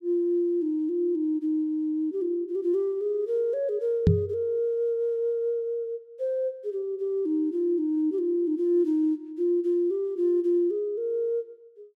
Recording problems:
microphone thump; at 4 s; peak +9 dB vs average level

